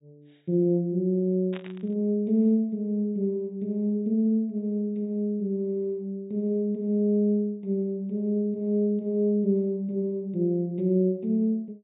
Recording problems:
treble cut off; nothing above 4 kHz
static burst; at 1.5 s; peak -12 dB vs average level

